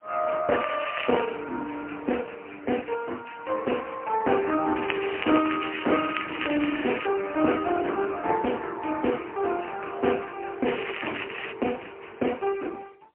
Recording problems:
phone line; 240 Hz to 3 kHz, AMR-NB, then MP3
crackling; at 0.5 s, from 5 to 7 s and at 11 s; loose cable, SNR 7 dB

